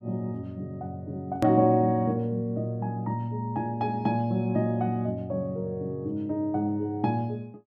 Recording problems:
edit click; at 1.5 s

